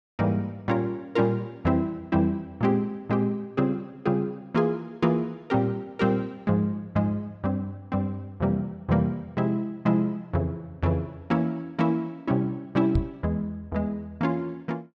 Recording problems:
microphone bump; at 13 s; peak +6 dB vs average level

